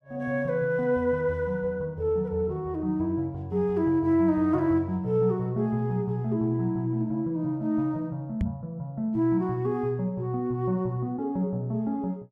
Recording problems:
microphone bump; at 8.5 s; peak +3 dB vs average level

